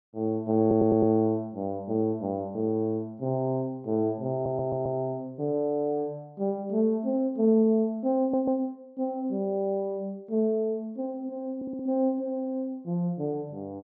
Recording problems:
stutter; 4 times, first at 0.5 s

